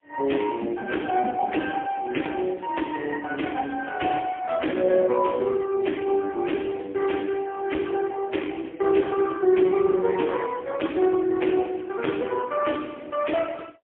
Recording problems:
phone line; 240 Hz to 3.4 kHz, AMR-NB, then MP3

